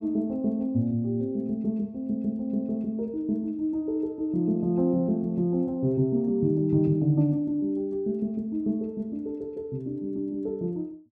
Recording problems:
none

